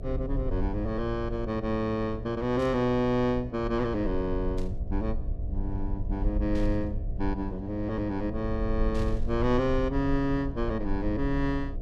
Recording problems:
hum; 60 Hz, harmonics up to 720 Hz, SNR 14 dB
rumble; below 60 Hz, SNR 7 dB
burst of static; 4 times, first at 2.5 s; peak -13 dB vs average level

